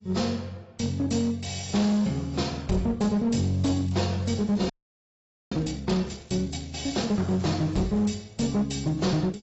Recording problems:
lossy codec; AAC, log-spectral distance 5 dB, nothing above 7.6 kHz
distortion; hard clipping, signal-to-distortion ratio 12 dB
crackling; from 3.5 to 5.5 s and from 6 to 8 s; loose cable, SNR 28 dB
frozen audio; at 4.5 s for 1 s

